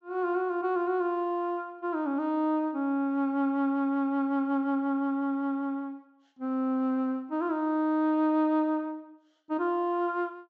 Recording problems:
treble missing; nothing above 7.7 kHz

